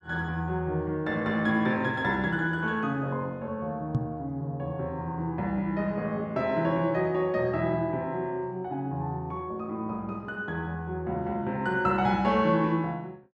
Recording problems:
knock on the microphone; at 4 s; peak +5 dB vs average level

